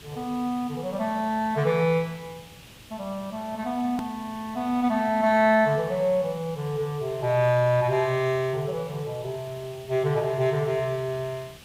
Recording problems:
hiss; SNR 20 dB
edit click; at 4 s

